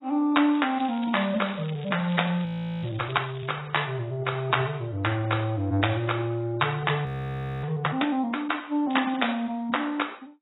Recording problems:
codec artefacts; AAC, log-spectral distance 6 dB, nothing above 3.8 kHz
crackling; from 0.5 to 3.5 s and at 9 s; loose cable, SNR 20 dB
frozen audio; at 2.5 s and at 7 s for 0.5 s

